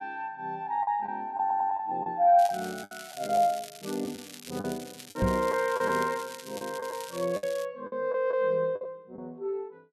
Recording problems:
lost packets; 7% of the sound replaced, filled with the last packet
stutter; at 1.5 s
crackling; from 2.5 to 7.5 s; loose cable, SNR 15 dB
microphone bump; at 5 s; peak +4 dB vs average level

